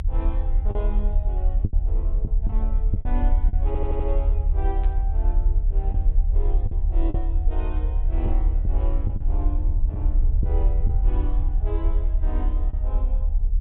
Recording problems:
treble cut off; nothing above 4 kHz
rumble; below 50 Hz, strongest tone 28 Hz, SNR -12 dB
lost packets; 4% of the sound replaced, filled with the last packet
audio stuttering; at 3.5 s
burst of static; at 5 s; peak -8 dB vs average level

